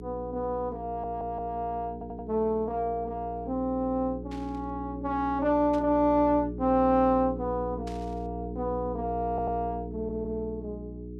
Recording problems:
electrical hum; 60 Hz, harmonics up to 420 Hz, SNR 10 dB
audio stuttering; 4 times, first at 1 s
static burst; at 4.5 s, at 5.5 s and at 8 s; peak -13 dB vs average level

